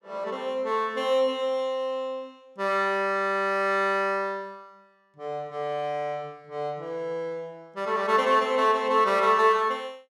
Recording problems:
none

